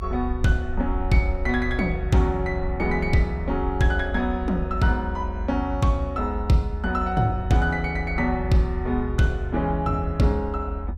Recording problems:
low-frequency rumble; below 74 Hz, SNR 7 dB

